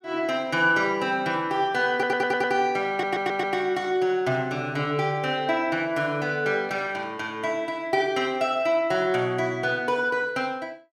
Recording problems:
stutter; at 2 s and at 3 s

